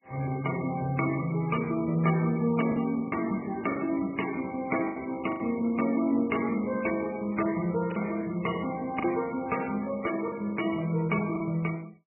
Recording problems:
codec artefacts; MP3, log-spectral distance 6 dB, nothing above 2.9 kHz
lost packets; 4% of the sound replaced, filled with the last packet

